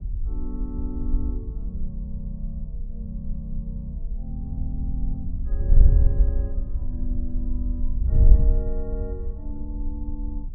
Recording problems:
wind noise; below 60 Hz, SNR -11 dB

